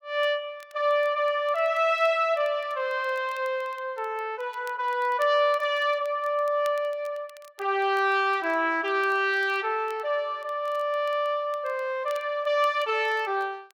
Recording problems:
crackle; vinyl, SNR 29 dB

